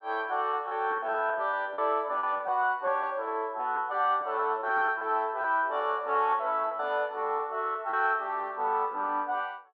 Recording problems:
packet loss; 8% of the sound replaced, filled with repeated pitch periods

